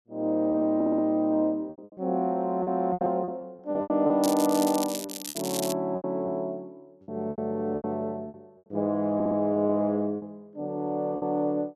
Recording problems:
packet loss; 11% of the sound replaced, filled with repeated pitch periods
audio stuttering; at 1 s and at 9 s
crackling; from 4 to 5.5 s; loose cable, SNR 7 dB

